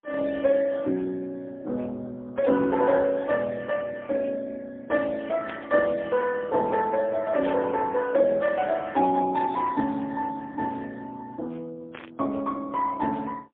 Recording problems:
telephone audio; 190 Hz to 2.3 kHz, AMR-NB, then MP3
static burst; 5 times, first at 2.5 s; peak -12 dB vs average level

